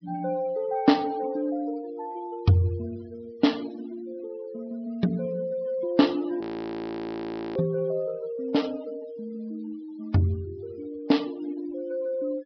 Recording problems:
treble cut off; nothing above 5.5 kHz
noise reduction artefacts; signal-to-artefact ratio 21 dB
audio freezing; at 6.5 s for 1 s

